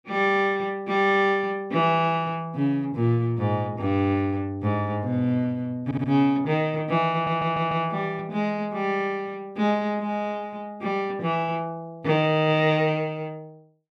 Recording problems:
stutter; at 6 s and at 7 s

